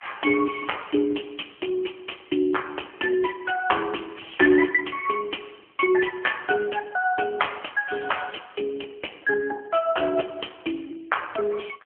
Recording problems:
phone line; 260 Hz to 3.3 kHz, AMR-NB

